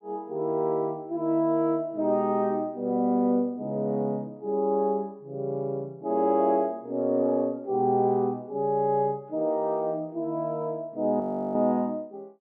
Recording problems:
frozen audio; at 11 s

